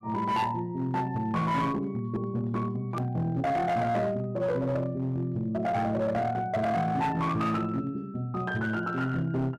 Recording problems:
distorted audio; hard clipping, signal-to-distortion ratio 12 dB
hard cut with a click; at 3 s

